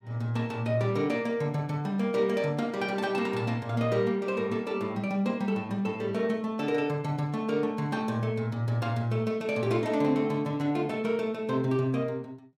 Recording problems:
none

